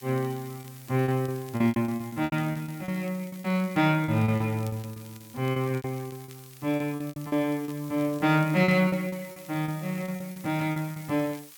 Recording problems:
hiss; slope +2 dB per octave, SNR 20 dB
crackle; vinyl, SNR 26 dB
packet loss; 16% of the sound replaced, filled with repeated pitch periods

